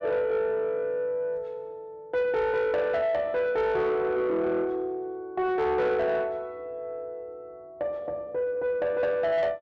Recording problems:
distorted audio; soft clipping, signal-to-distortion ratio 12 dB

